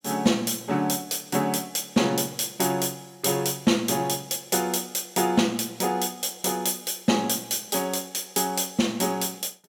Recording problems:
none

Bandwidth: 17 kHz